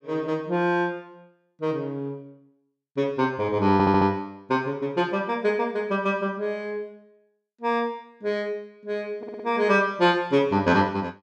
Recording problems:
audio stuttering; at 3.5 s and at 9 s

